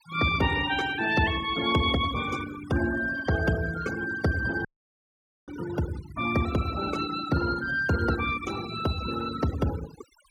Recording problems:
noise reduction artefacts; signal-to-artefact ratio 12 dB
dropout; at 4.5 s for 1 s

